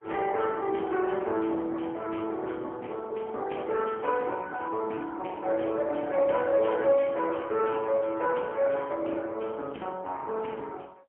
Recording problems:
telephone audio; 280 Hz to 3.1 kHz, AMR-NB, then MP3

